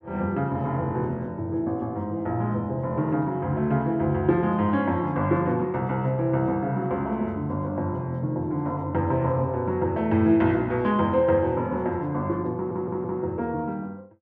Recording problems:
stutter; at 13 s

